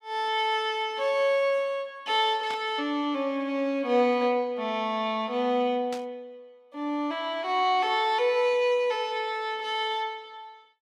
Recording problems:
burst of static; at 2.5 s and at 6 s; peak -8 dB vs average level

